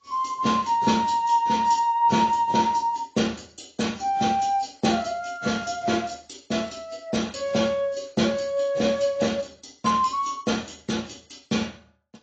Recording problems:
codec artefacts; AAC, log-spectral distance 5 dB, nothing above 7.3 kHz

